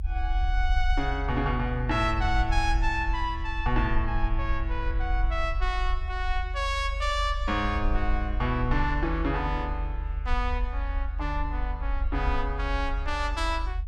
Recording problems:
rumble; below 58 Hz, SNR 1 dB

